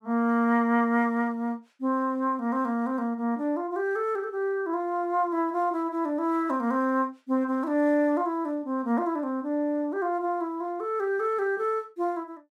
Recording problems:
none

